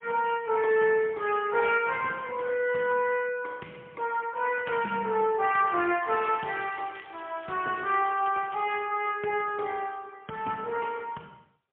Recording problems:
phone line; 260 Hz to 3.3 kHz, AMR-NB, then MP3
crackle; at 4.5 s and from 6 to 9 s; loose cable, SNR 25 dB

